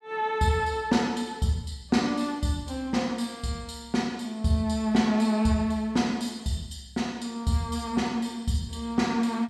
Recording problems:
none

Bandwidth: 12.5 kHz